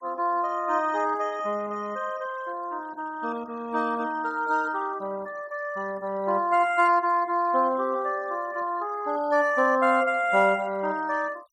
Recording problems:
noise reduction artefacts; signal-to-artefact ratio 24 dB

